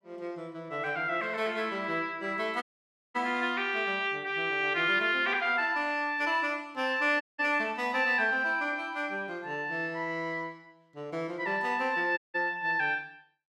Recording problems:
audio cutting out; at 2.5 s for 0.5 s, at 7 s and at 12 s

